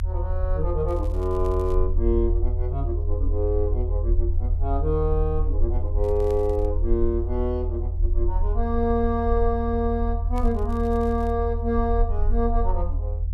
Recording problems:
low-frequency rumble; below 80 Hz, SNR 0 dB
crackle; at 1 s, at 6 s and at 10 s; loose cable, SNR 27 dB

